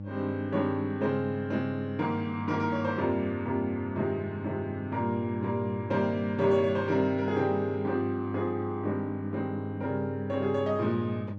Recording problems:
hum; 50 Hz, harmonics up to 600 Hz, SNR 8 dB

